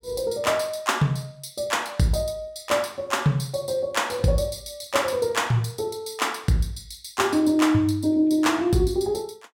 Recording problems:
none

